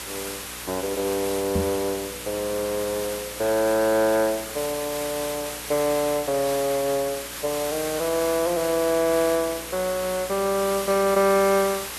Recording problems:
hum; 60 Hz, harmonics up to 600 Hz, SNR 21 dB
background hiss; slope +1 dB per octave, SNR 8 dB
knock on the microphone; at 1.5 s; peak +2 dB vs average level

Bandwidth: 13 kHz